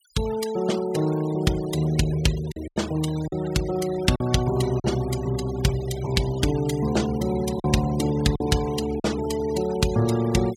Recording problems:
noise reduction artefacts; signal-to-artefact ratio 16 dB
packet loss; 3% of the sound replaced, filled with silence

